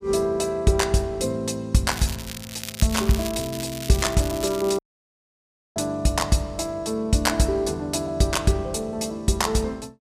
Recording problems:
crackle; from 2 to 5 s; loose cable, SNR 11 dB
dropout; at 5 s for 1 s

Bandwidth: 15 kHz